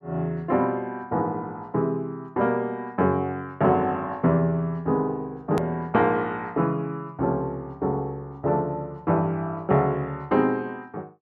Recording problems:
hard cut with a click; at 5.5 s

